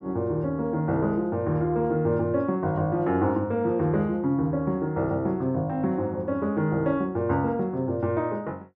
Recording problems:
none

